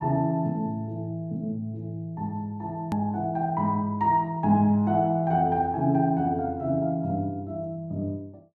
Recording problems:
click at an edit; at 3 s

